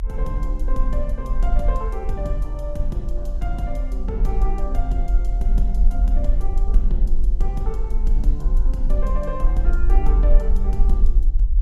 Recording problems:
low-frequency rumble; below 44 Hz, SNR -7 dB

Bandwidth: 14.5 kHz